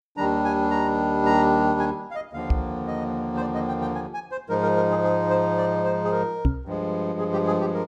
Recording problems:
microphone thump; at 2.5 s and at 6.5 s; peak +6 dB vs average level

